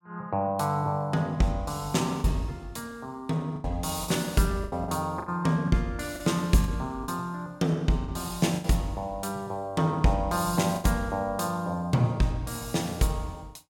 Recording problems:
lost packets; 5% of the sound replaced, filled with the last packet

